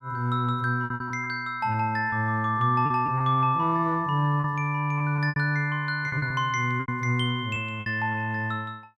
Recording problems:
lost packets; 8% of the sound replaced, filled with repeated pitch periods

